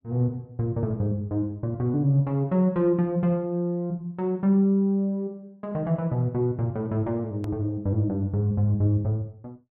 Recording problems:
click at an edit; at 7.5 s

